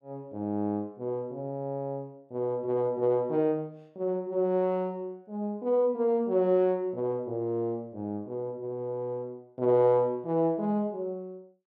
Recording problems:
none

